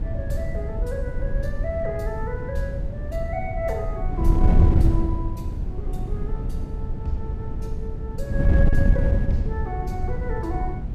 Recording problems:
wind on the microphone; below 98 Hz, SNR -6 dB

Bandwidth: 15 kHz